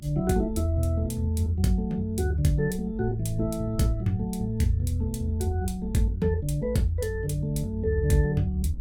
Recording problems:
low-frequency rumble; below 62 Hz, strongest tone 56 Hz, SNR 12 dB

